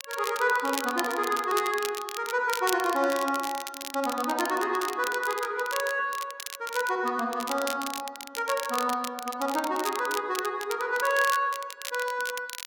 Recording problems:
crackling; vinyl, SNR 9 dB

